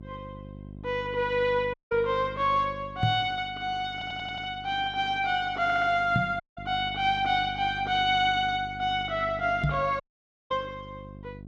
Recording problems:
mains hum; 50 Hz, harmonics up to 700 Hz, SNR 17 dB
dropout; at 1.5 s, at 6.5 s and at 10 s for 0.5 s
microphone thump; at 3 s, at 6 s and at 9.5 s; peak +4 dB vs average level
stutter; at 4 s and at 5.5 s

